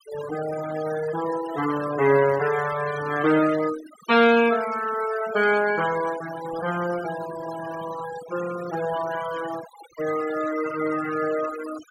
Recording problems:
noise reduction artefacts; signal-to-artefact ratio 13 dB

